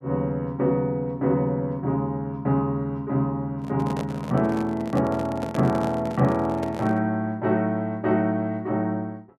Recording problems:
microphone handling noise; from 3.5 to 7 s; peak -2 dB vs average level

